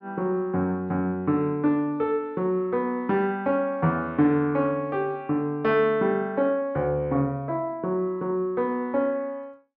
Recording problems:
none

